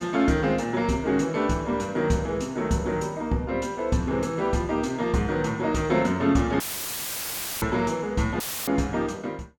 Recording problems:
dropout; at 6.5 s for 1 s and at 8.5 s; filled with static

